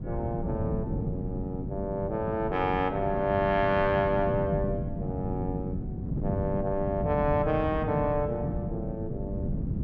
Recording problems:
wind noise; below 210 Hz, SNR 4 dB

